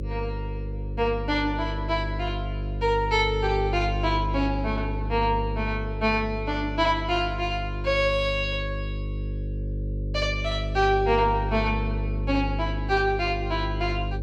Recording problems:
electrical hum; 50 Hz, harmonics up to 550 Hz, SNR 5 dB

